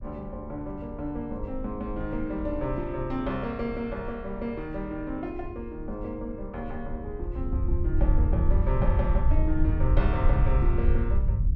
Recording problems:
rumble; below 72 Hz, SNR -4 dB

